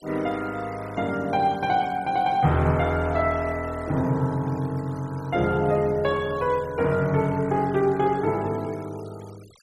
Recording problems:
denoising artefacts; signal-to-artefact ratio 23 dB

